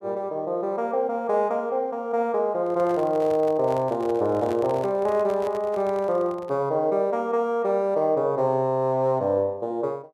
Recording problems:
microphone handling noise; from 2.5 to 6.5 s; peak -9 dB vs average level

